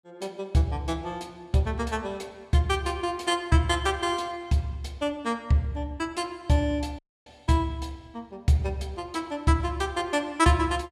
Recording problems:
dropout; at 7 s

